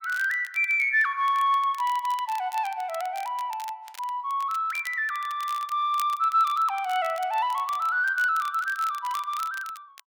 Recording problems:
crackle; vinyl, SNR 20 dB

